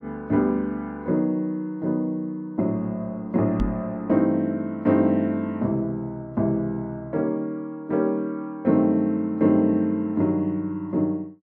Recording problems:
knock on the microphone; at 3.5 s; peak +1 dB vs average level

